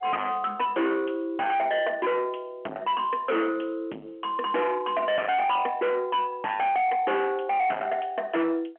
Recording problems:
telephone audio; 220 Hz to 3.3 kHz, G.711
distorted audio; soft clipping, signal-to-distortion ratio 6 dB

